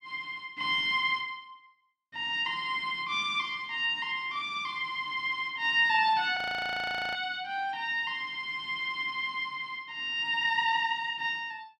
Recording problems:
audio freezing; at 6.5 s for 1 s

